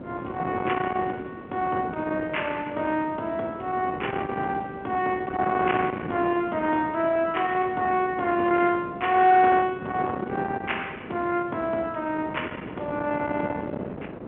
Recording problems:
telephone audio; 260 Hz to 3.3 kHz, G.711
distortion; soft clipping, signal-to-distortion ratio 16 dB
wind noise; below 800 Hz, SNR 10 dB

